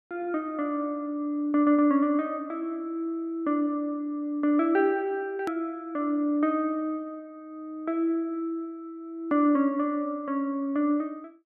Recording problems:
click at an edit; at 5.5 s

